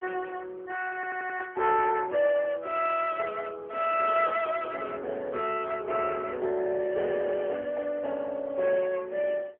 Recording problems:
telephone audio; 300 Hz to 3.2 kHz, AMR-NB
audio stuttering; at 1 s

